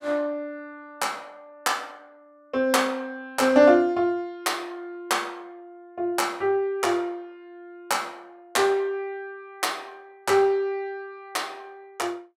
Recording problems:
none

